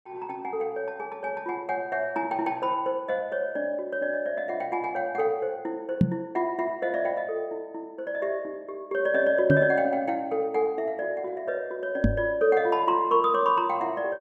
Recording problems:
microphone thump; at 6 s, at 9.5 s and at 12 s; peak +9 dB vs average level

